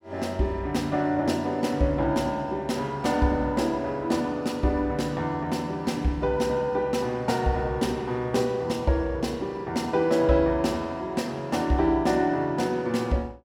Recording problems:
none

